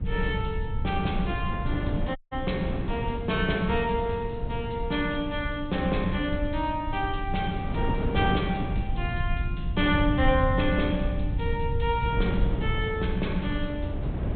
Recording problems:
treble missing; nothing above 4 kHz
hum; 60 Hz, harmonics up to 540 Hz, SNR 18 dB
low-frequency rumble; below 100 Hz, SNR 4 dB
wind noise; below 290 Hz, SNR 6 dB
audio cutting out; at 2 s

